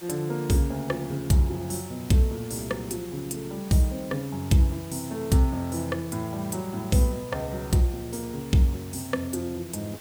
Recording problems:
background hiss; slope -2 dB per octave, SNR 18 dB

